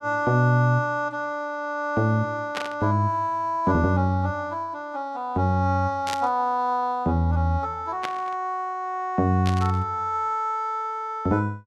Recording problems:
burst of static; 4 times, first at 2.5 s; peak -2 dB vs average level

